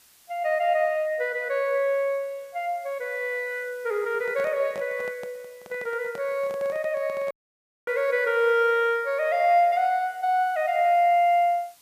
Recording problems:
hiss; slope +1 dB per octave, SNR 29 dB
handling noise; from 4 to 7.5 s; peak -12 dB vs average level
dropout; at 7.5 s for 0.5 s

